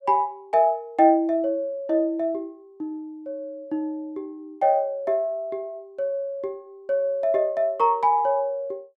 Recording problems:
none

